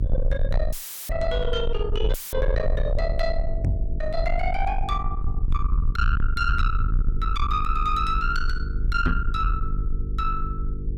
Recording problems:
distortion; soft clipping, signal-to-distortion ratio 7 dB
electrical hum; 50 Hz, harmonics up to 450 Hz, SNR 7 dB
low-frequency rumble; below 56 Hz, strongest tone 22 Hz, SNR 1 dB
audio cutting out; at 0.5 s and at 2 s; filled with static
microphone thump; at 3.5 s and at 9 s; peak +7 dB vs average level

